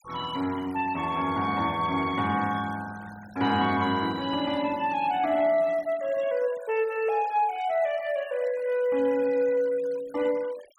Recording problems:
denoising artefacts; signal-to-artefact ratio 21 dB

